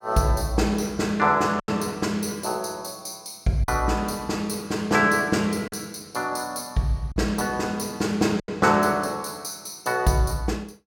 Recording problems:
lost packets; 3% of the sound replaced, filled with silence

